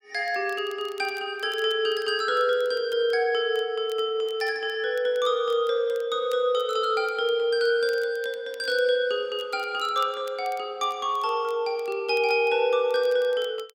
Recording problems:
crackle; vinyl, SNR 27 dB

